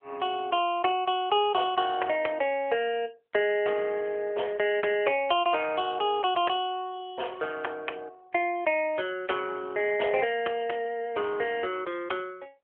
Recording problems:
telephone audio; 340 Hz to 3.3 kHz, AMR-NB

